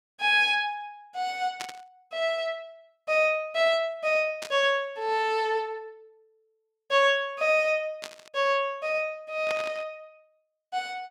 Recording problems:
static burst; 4 times, first at 1.5 s; peak -5 dB vs average level

